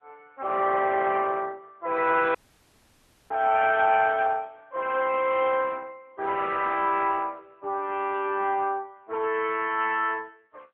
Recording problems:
phone line; 260 Hz to 3.1 kHz, AMR-NB
dropout; at 2.5 s for 1 s

